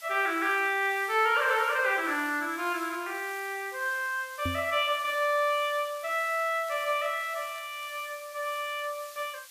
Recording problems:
hiss; slope +4 dB per octave, SNR 18 dB
crackle; from 0.5 to 2 s and from 5 to 8 s; loose cable, SNR 29 dB
knock on the microphone; at 4.5 s; peak -2 dB vs average level

